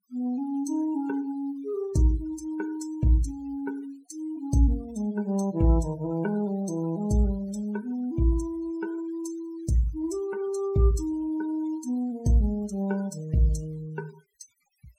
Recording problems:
denoising artefacts; signal-to-artefact ratio 21 dB

